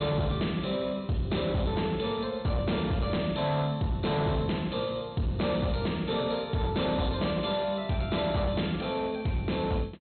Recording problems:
treble cut off; nothing above 4.2 kHz
distorted audio; hard clipping, signal-to-distortion ratio 11 dB

